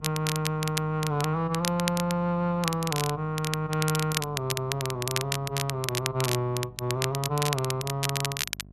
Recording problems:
electrical hum; 50 Hz, harmonics up to 750 Hz, SNR 20 dB
crackle; vinyl, SNR 4 dB

